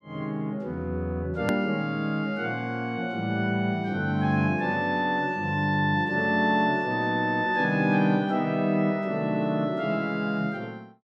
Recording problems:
hard cut with a click; at 1.5 s

